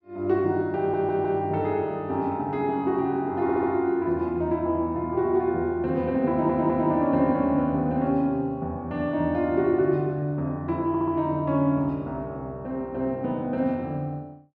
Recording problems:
audio stuttering; 4 times, first at 1 s

